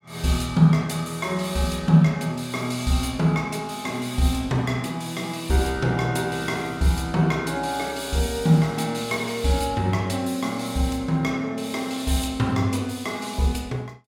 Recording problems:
none

